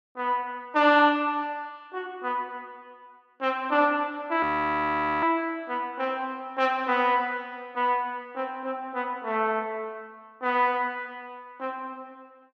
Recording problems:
audio freezing; at 4.5 s for 1 s

